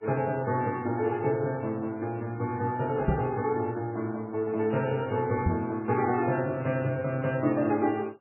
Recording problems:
lossy compression; MP3, log-spectral distance 2 dB, nothing above 2.5 kHz
knock on the microphone; at 3 s and at 5.5 s; peak +6 dB vs average level

